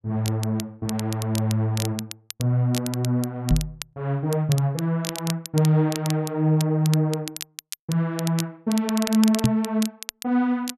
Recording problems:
crackle; vinyl, SNR 11 dB
microphone bump; at 3.5 s and at 9.5 s; peak +8 dB vs average level

